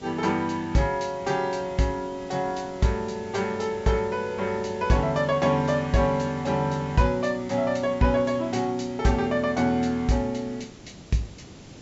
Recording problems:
treble cut off; nothing above 8 kHz
hiss; SNR 19 dB

